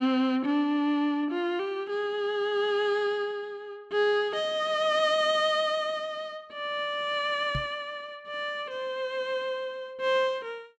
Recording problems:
knock on the microphone; at 7.5 s; peak -1 dB vs average level

